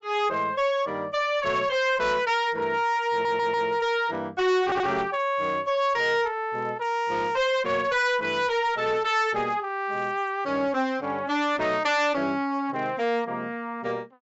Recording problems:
treble missing; nothing above 8 kHz
distorted audio; hard clipping, signal-to-distortion ratio 11 dB
audio stuttering; at 3 s and at 4.5 s

